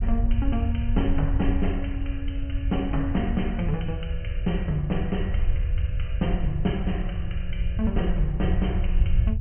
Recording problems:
treble cut off; nothing above 3.1 kHz
rumble; below 78 Hz, SNR -1 dB

